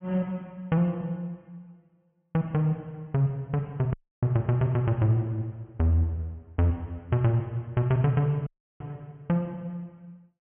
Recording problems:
low-pass filter; nothing above 3.3 kHz
audio cutting out; at 4 s and at 8.5 s

